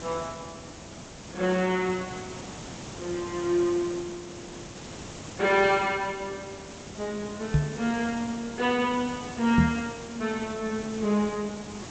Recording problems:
codec artefacts; G.722, log-spectral distance 15 dB
background hiss; SNR 12 dB
microphone thump; at 7.5 s and at 9.5 s; peak +9 dB vs average level

